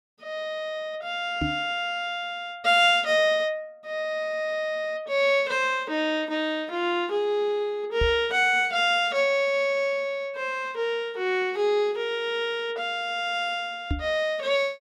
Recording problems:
microphone bump; at 1.5 s, at 8 s and at 14 s; peak +1 dB vs average level

